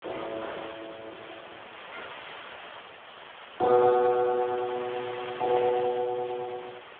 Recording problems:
telephone audio; 320 Hz to 2.1 kHz, Speex
hiss; SNR 15 dB
wind on the microphone; below 1.4 kHz, SNR 23 dB
crackling; from 4.5 to 6.5 s; loose cable, SNR 27 dB

